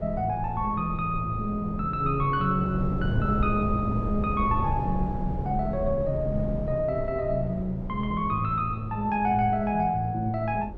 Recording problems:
rumble; below 190 Hz, SNR 8 dB

